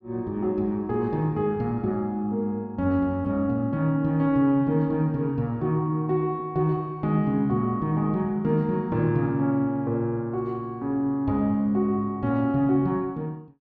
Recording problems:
none

